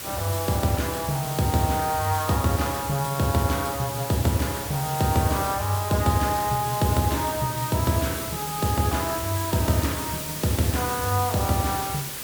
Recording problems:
background hiss; SNR 7 dB

